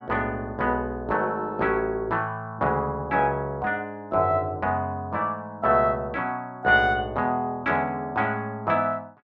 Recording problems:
none

